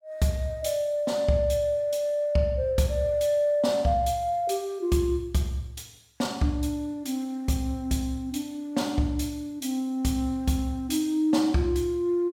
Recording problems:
none

